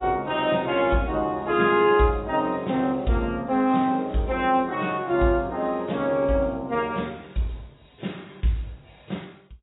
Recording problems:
codec artefacts; AAC, log-spectral distance 4 dB, nothing above 3.8 kHz

